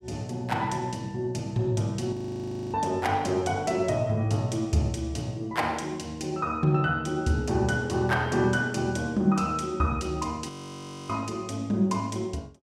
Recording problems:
frozen audio; at 2 s for 0.5 s and at 10 s for 0.5 s

